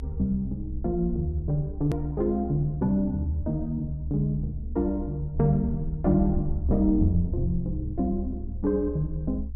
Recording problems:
low-frequency rumble; below 68 Hz, SNR 8 dB
click at an edit; at 2 s

